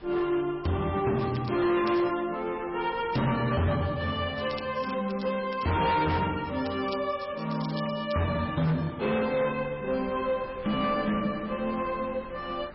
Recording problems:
lossy codec; MP3, log-spectral distance 5 dB, nothing above 5.5 kHz
distortion; hard clipping, signal-to-distortion ratio 11 dB
wind noise; below 1.3 kHz, SNR 21 dB
crackling; from 1 to 2 s, from 4.5 to 6 s and from 6.5 to 8.5 s; loose cable, SNR 18 dB

